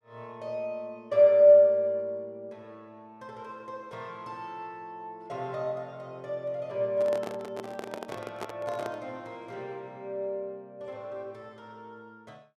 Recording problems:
handling noise; from 7 to 9 s; peak -6 dB vs average level

